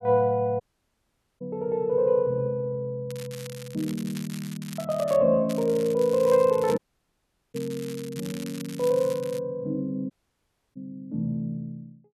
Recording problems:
dropout; at 0.5 s for 1 s, at 7 s for 1 s and at 10 s for 0.5 s
crackle; from 3 to 5 s and from 5.5 to 9.5 s; loose cable, SNR 17 dB

